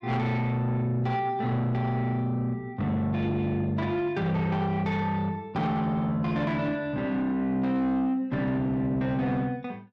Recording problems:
distorted audio; soft clipping, signal-to-distortion ratio 11 dB

